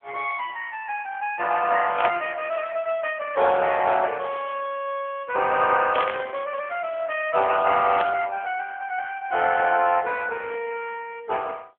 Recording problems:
phone line; 370 Hz to 3.4 kHz, AMR-NB
burst of static; at 2 s, at 6 s and at 8 s; peak -2 dB vs average level

